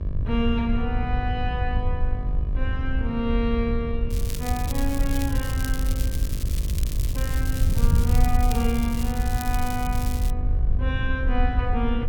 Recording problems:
hum; 50 Hz, harmonics up to 1.8 kHz, SNR 12 dB
wind noise; below 78 Hz, SNR -3 dB
crackle; from 4 to 10 s; loose cable, SNR 8 dB

